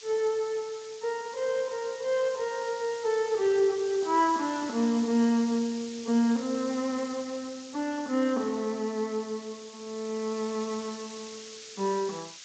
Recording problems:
lossy compression; Speex, log-spectral distance 13 dB
hiss; SNR 15 dB

